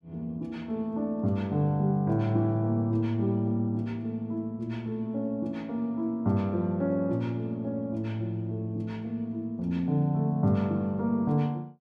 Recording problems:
none

